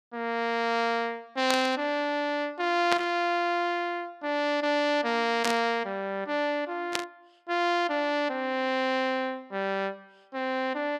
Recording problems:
burst of static; 4 times, first at 1.5 s; peak +4 dB vs average level

